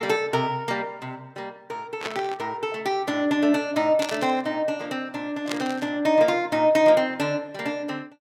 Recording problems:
burst of static; at 2 s, at 4 s and at 5.5 s; peak -2 dB vs average level

